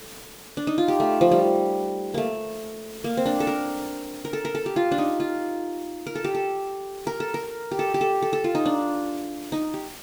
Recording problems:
hiss; slope -2 dB per octave, SNR 18 dB

